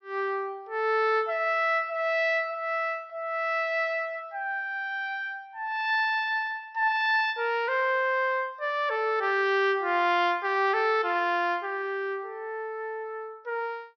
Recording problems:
treble cut off; nothing above 5.9 kHz

